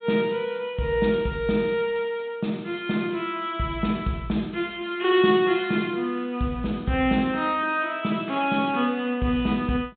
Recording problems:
treble cut off; nothing above 4 kHz

